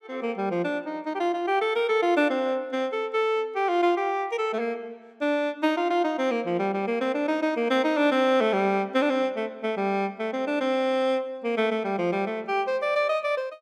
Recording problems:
none

